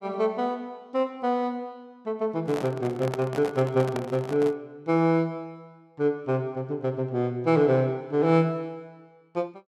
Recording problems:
microphone handling noise; from 2.5 to 4.5 s; peak -3 dB vs average level

